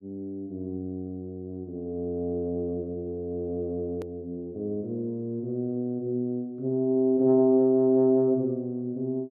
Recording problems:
click at an edit; at 4 s

